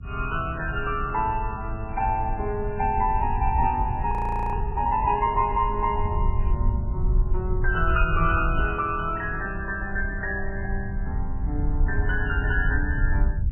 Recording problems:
lossy codec; MP3, log-spectral distance 2 dB, nothing above 2.5 kHz
low-frequency rumble; below 72 Hz, SNR 3 dB
frozen audio; at 4 s
static burst; at 6.5 s; peak -19 dB vs average level

